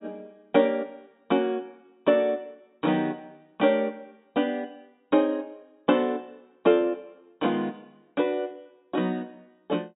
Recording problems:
treble missing; nothing above 4 kHz

